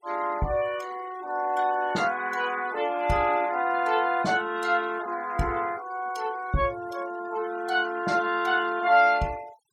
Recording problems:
noise reduction artefacts; signal-to-artefact ratio 20 dB

